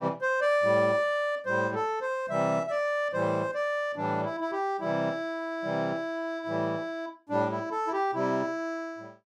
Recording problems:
none

